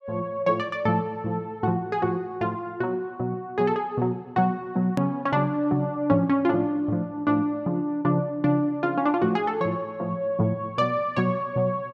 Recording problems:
edit click; at 5 s

